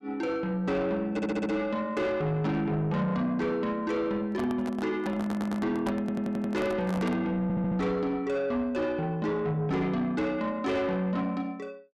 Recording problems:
distortion; soft clipping, signal-to-distortion ratio 11 dB
audio stuttering; 4 times, first at 1 s
microphone handling noise; from 4.5 to 7 s; peak -1 dB vs average level

